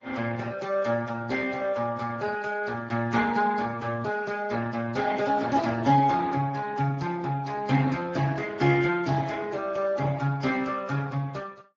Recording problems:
lossy codec; Vorbis, then Speex, log-spectral distance 4 dB

